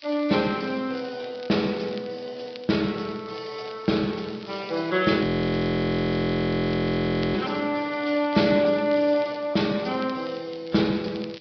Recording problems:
low-pass filter; nothing above 5.2 kHz
lossy codec; AAC, log-spectral distance 4 dB
hiss; SNR 27 dB
crackling; vinyl, SNR 23 dB
audio freezing; at 5 s for 2 s

